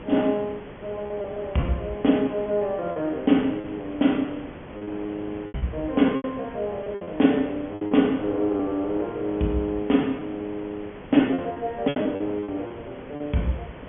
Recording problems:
treble missing; nothing above 3.4 kHz
background hiss; SNR 15 dB
packet loss; 8% of the sound replaced, filled with repeated pitch periods

